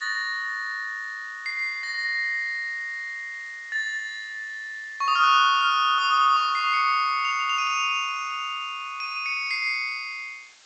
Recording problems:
low-pass filter; nothing above 8 kHz
hiss; slope +2 dB per octave, SNR 26 dB

